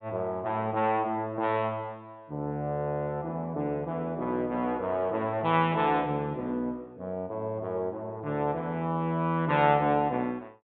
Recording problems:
treble missing; nothing above 4 kHz

